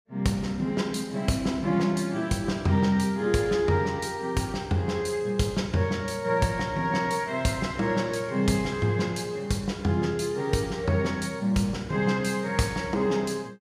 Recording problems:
none

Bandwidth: 15 kHz